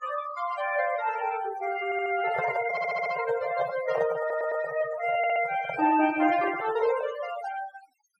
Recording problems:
noise reduction artefacts; signal-to-artefact ratio 13 dB
audio stuttering; 4 times, first at 2 s
handling noise; from 2 to 7 s; peak -1 dB vs average level

